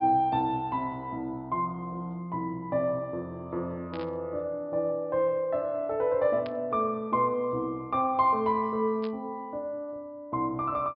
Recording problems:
treble missing; nothing above 5.5 kHz
burst of static; at 4 s, at 6.5 s and at 9 s; peak -10 dB vs average level

